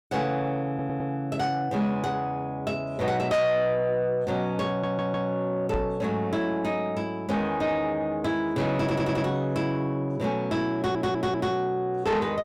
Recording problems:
distorted audio; soft clipping, signal-to-distortion ratio 11 dB
audio stuttering; 4 times, first at 0.5 s
microphone thump; at 5.5 s; peak 0 dB vs average level

